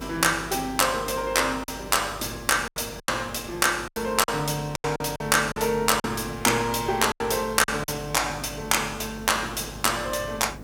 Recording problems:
electrical hum; 50 Hz, harmonics up to 500 Hz, SNR 20 dB
hiss; slope -8 dB per octave, SNR 20 dB
packet loss; 7% of the sound replaced, filled with silence

